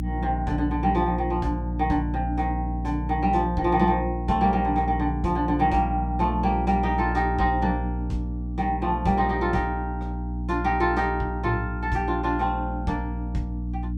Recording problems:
hum; 60 Hz, harmonics up to 300 Hz, SNR 5 dB

